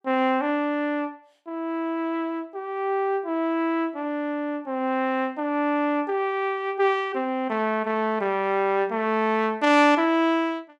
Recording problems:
none

